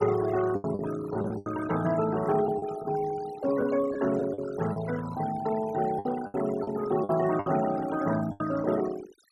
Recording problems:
denoising artefacts; signal-to-artefact ratio 13 dB
lost packets; 8% of the sound replaced, filled with the last packet

